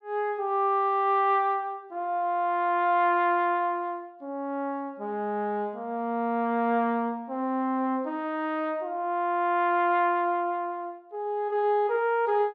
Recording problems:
none

